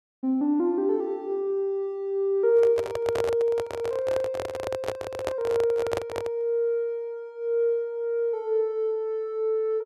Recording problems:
microphone handling noise; from 2.5 to 6.5 s; peak +1 dB vs average level

